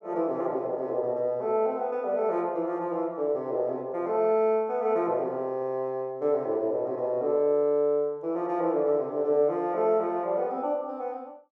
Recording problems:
none

